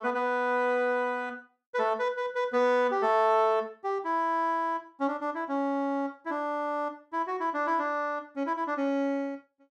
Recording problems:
none

